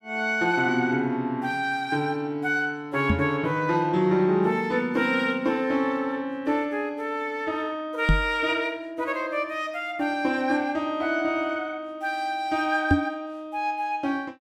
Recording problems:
knock on the microphone; at 3 s, at 8 s and at 13 s; peak +9 dB vs average level

